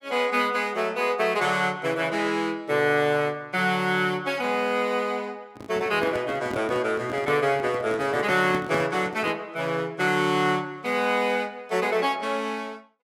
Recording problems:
microphone handling noise; from 5.5 to 9.5 s; peak -5 dB vs average level

